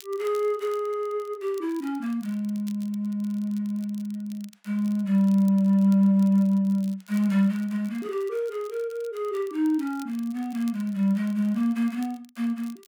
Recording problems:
crackle; vinyl, SNR 27 dB

